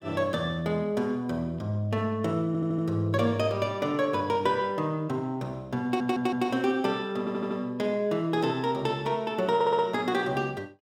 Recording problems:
stutter; 4 times, first at 2.5 s

